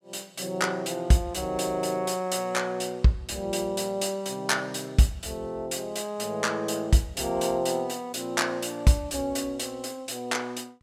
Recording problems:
none

